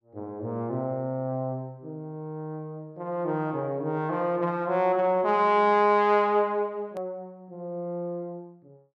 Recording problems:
hard cut with a click; at 7 s

